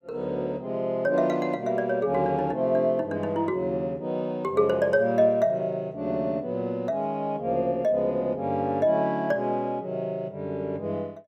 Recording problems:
none

